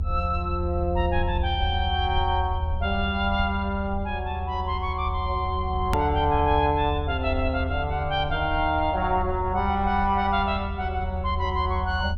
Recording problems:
low-frequency rumble; below 80 Hz, strongest tone 78 Hz, SNR 5 dB
click at an edit; at 6 s

